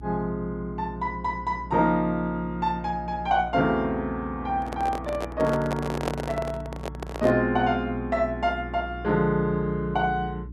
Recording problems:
hum; 60 Hz, harmonics up to 360 Hz, SNR 14 dB
microphone handling noise; from 4.5 to 7.5 s; peak +2 dB vs average level

